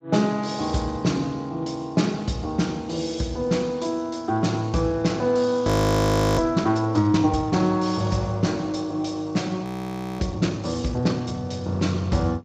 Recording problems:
codec artefacts; Speex, log-spectral distance 3 dB, nothing above 14.7 kHz
audio freezing; at 5.5 s for 0.5 s and at 9.5 s for 0.5 s

